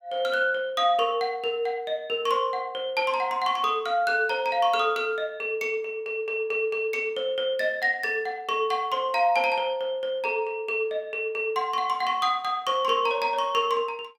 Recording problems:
none

